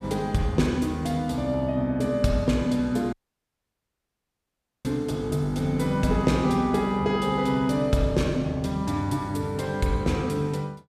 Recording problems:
dropout; at 3 s for 1.5 s

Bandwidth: 15 kHz